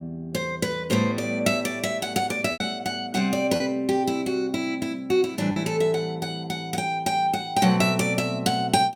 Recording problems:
lost packets; 1.8% of the sound replaced, filled with repeated pitch periods

